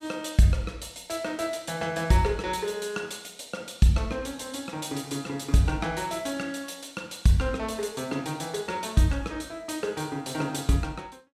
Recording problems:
none

